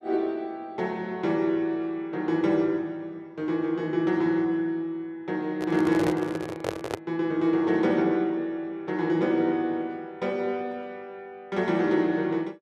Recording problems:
handling noise; from 5.5 to 7 s; peak +2 dB vs average level

